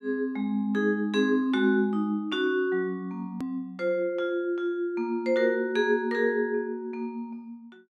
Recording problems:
hard cut with a click; at 3.5 s

